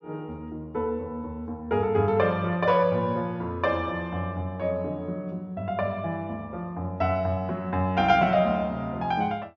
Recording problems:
low-pass filter; nothing above 6.8 kHz

